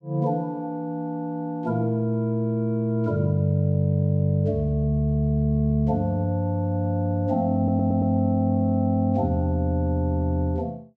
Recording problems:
audio stuttering; at 7.5 s

